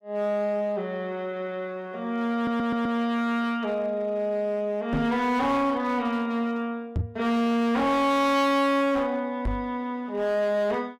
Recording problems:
distortion; hard clipping, signal-to-distortion ratio 7 dB
stutter; at 2.5 s
microphone thump; at 5 s, at 7 s and at 9.5 s; peak +2 dB vs average level

